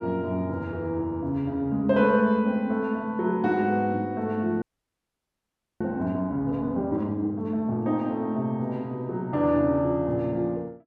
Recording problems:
audio freezing; at 4.5 s for 1 s

